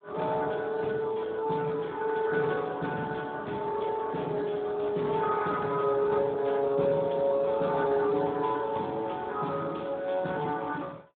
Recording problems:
phone line; 110 Hz to 3.6 kHz, Speex

